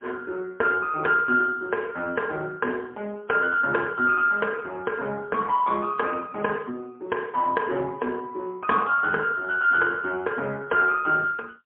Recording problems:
telephone audio; 220 Hz to 3.7 kHz, AMR-NB, then MP3

